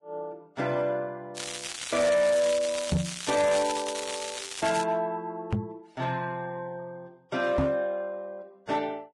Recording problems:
lossy compression; Vorbis, log-spectral distance 5 dB, nothing above 10.7 kHz
distorted audio; hard clipping, signal-to-distortion ratio 11 dB
crackle; from 1.5 to 5 s; loose cable, SNR 6 dB
knock on the microphone; at 3 s, at 5.5 s and at 7.5 s; peak +6 dB vs average level

